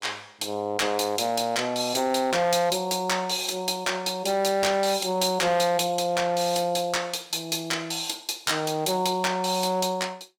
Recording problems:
distorted audio; hard clipping, signal-to-distortion ratio 11 dB

